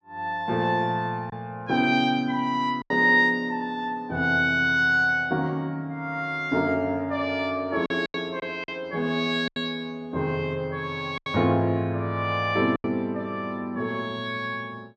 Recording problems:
lost packets; 4% of the sound replaced, filled with silence

